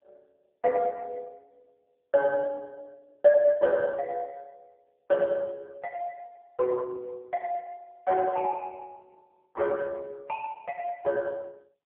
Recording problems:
telephone audio; 370 Hz to 2.5 kHz, AMR-NB

